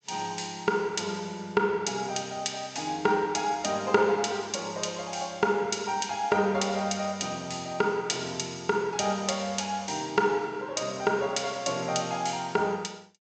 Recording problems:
low-pass filter; nothing above 8 kHz

